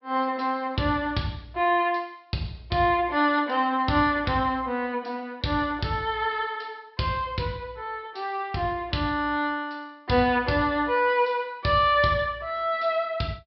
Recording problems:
treble missing; nothing above 5.3 kHz

